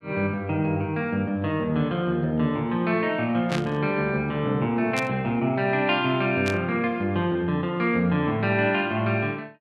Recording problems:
static burst; at 3.5 s, at 5 s and at 6.5 s; peak -2 dB vs average level

